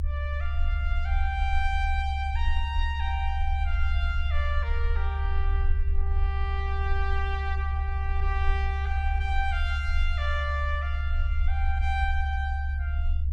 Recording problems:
rumble; below 72 Hz, SNR -5 dB

